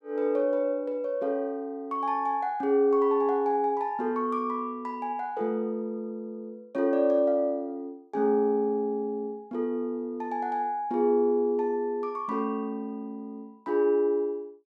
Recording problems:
none

